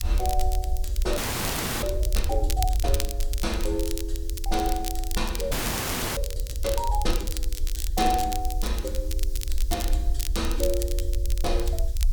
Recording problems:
background hiss; SNR 19 dB
rumble; below 58 Hz, SNR -1 dB
crackle; vinyl, SNR 6 dB
audio freezing; at 1 s for 0.5 s and at 5.5 s for 0.5 s

